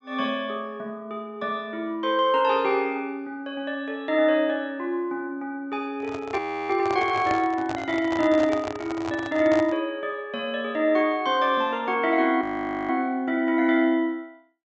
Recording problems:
treble missing; nothing above 8 kHz
microphone handling noise; from 6 to 10 s; peak -2 dB vs average level
audio freezing; at 6.5 s and at 12 s

